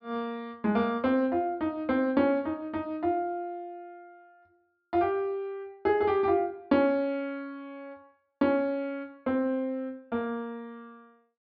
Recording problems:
treble missing; nothing above 5.5 kHz

